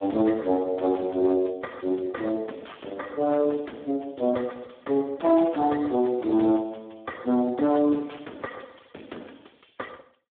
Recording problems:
phone line; 220 Hz to 3.9 kHz, Speex
distortion; soft clipping, signal-to-distortion ratio 13 dB

